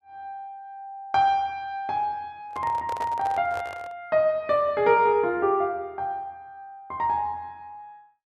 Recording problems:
microphone handling noise; from 2.5 to 4 s; peak -7 dB vs average level

